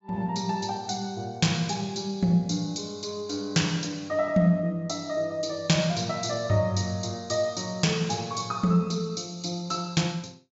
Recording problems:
low-pass filter; nothing above 8 kHz

